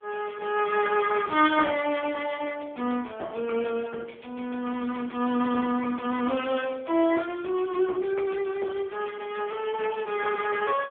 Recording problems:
telephone audio; 260 Hz to 3.3 kHz, AMR-NB

